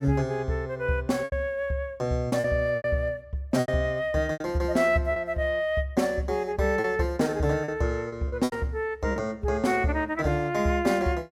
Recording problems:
packet loss; 6% of the sound replaced, filled with repeated pitch periods

